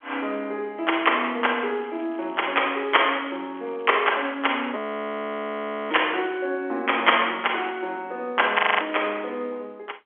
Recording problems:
telephone audio; 260 Hz to 3.3 kHz, G.711
crackle; from 1.5 to 3 s and from 3.5 to 5 s; loose cable, SNR 29 dB
audio freezing; at 5 s for 1 s and at 8.5 s

